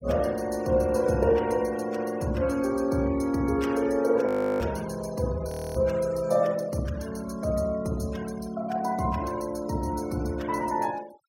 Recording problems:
noise reduction artefacts; signal-to-artefact ratio 21 dB
frozen audio; at 4.5 s and at 5.5 s

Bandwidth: 16 kHz